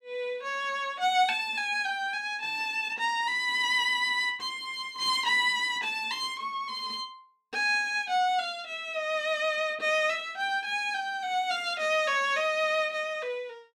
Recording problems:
none

